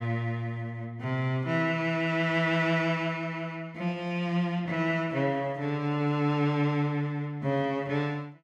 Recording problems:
none

